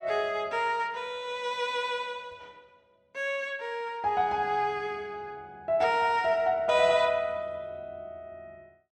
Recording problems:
none

